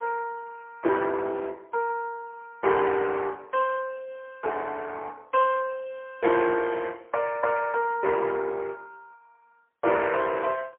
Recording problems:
telephone audio; 300 Hz to 3.2 kHz, AMR-NB, then MP3

